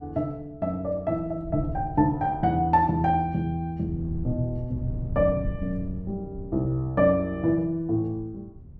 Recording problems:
wind noise; below 130 Hz, SNR 11 dB

